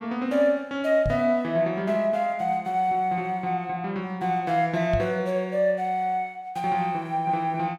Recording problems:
microphone thump; at 1 s and at 5 s; peak 0 dB vs average level

